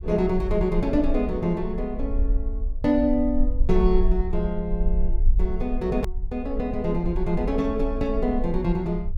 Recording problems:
rumble; below 46 Hz, strongest tone 22 Hz, SNR 4 dB
click at an edit; at 6 s

